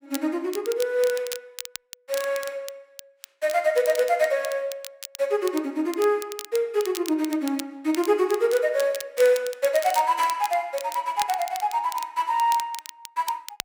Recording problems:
crackle; vinyl, SNR 14 dB

